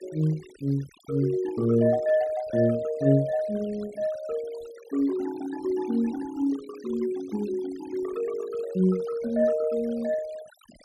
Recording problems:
noise reduction artefacts; signal-to-artefact ratio 21 dB

